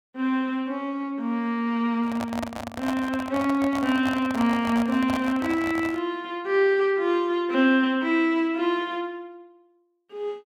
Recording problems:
handling noise; from 2 to 6 s; peak -3 dB vs average level

